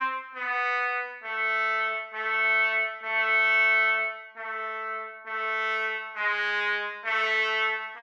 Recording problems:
none

